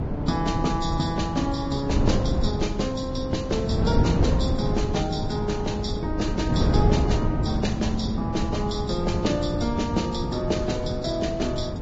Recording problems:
codec artefacts; Vorbis, log-spectral distance 4 dB, nothing above 7.6 kHz
wind on the microphone; below 240 Hz, SNR 0 dB

